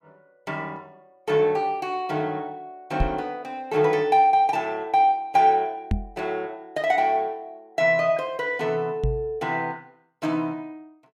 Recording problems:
microphone thump; at 3 s, at 6 s and at 9 s; peak +3 dB vs average level

